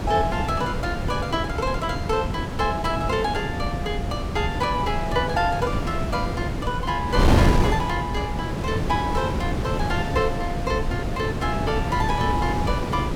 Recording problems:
wind noise; below 340 Hz, SNR 0 dB

